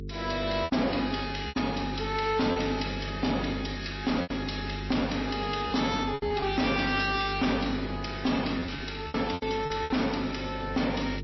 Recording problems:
codec artefacts; MP3, log-spectral distance 6 dB, nothing above 5.7 kHz
distortion; hard clipping, uneven, signal-to-distortion ratio 12 dB
hum; 50 Hz, harmonics up to 450 Hz, SNR 10 dB
lost packets; 6% of the sound replaced, filled with repeated pitch periods

